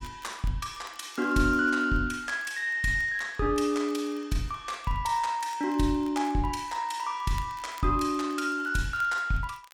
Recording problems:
crackling; vinyl, SNR 27 dB

